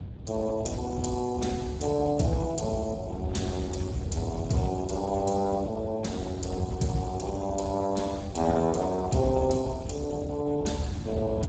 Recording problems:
codec artefacts; Speex, log-spectral distance 3 dB, nothing above 7.3 kHz
low-frequency rumble; below 150 Hz, SNR 7 dB

